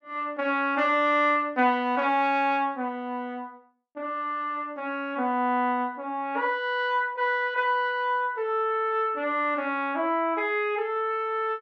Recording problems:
none

